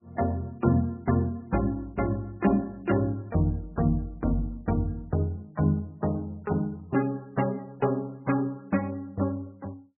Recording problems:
lossy codec; MP3, log-spectral distance 2 dB, nothing above 2.5 kHz

